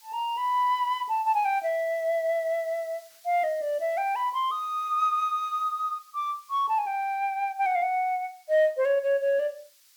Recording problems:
hiss; slope +5 dB per octave, SNR 27 dB

